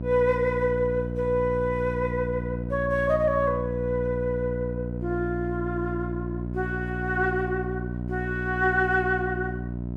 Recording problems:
electrical hum; 60 Hz, harmonics up to 720 Hz, SNR 5 dB

